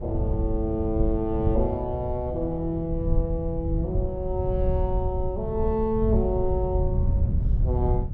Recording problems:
wind on the microphone; below 100 Hz, SNR 0 dB

